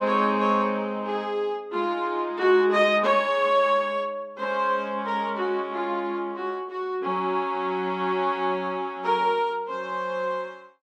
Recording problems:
none

